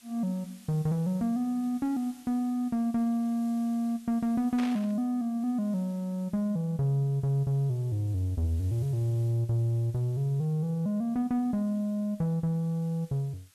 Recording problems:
background hiss; slope +2 dB per octave, SNR 27 dB
burst of static; at 4.5 s; peak -8 dB vs average level

